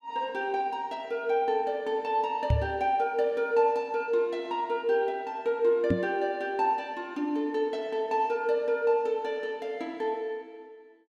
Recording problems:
knock on the microphone; at 2.5 s and at 6 s; peak +6 dB vs average level

